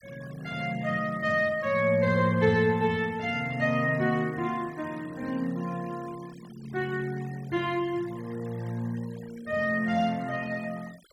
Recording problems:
denoising artefacts; signal-to-artefact ratio 22 dB

